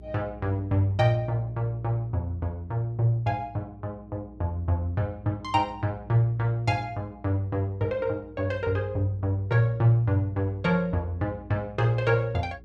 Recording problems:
electrical hum; 60 Hz, harmonics up to 420 Hz, SNR 21 dB

